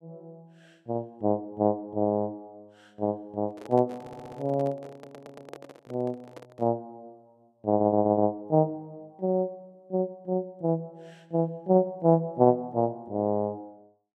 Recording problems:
handling noise; from 3.5 to 6.5 s; peak -10 dB vs average level
stutter; at 4 s, at 5 s and at 7.5 s

